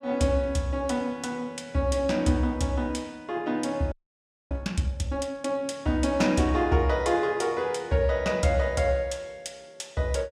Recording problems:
audio freezing; at 4 s for 0.5 s

